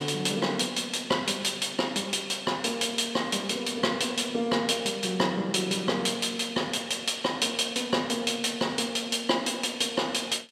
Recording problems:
none

